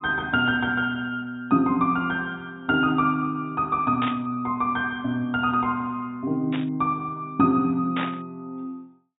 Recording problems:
low-pass filter; nothing above 4 kHz
static burst; at 4 s, at 6.5 s and at 8 s; peak -3 dB vs average level

